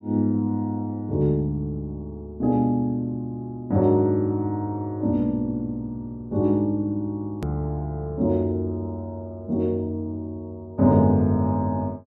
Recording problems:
edit click; at 7.5 s

